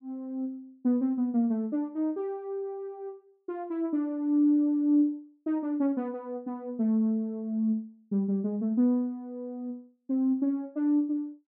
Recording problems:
none

